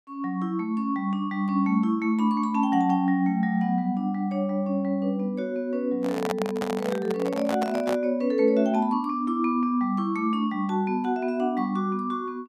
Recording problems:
handling noise; from 6 to 8 s; peak +1 dB vs average level

